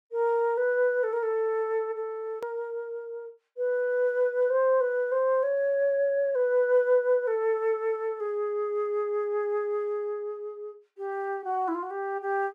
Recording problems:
hard cut with a click; at 2.5 s

